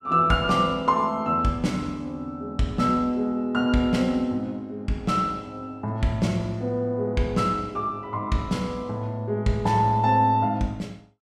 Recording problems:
none

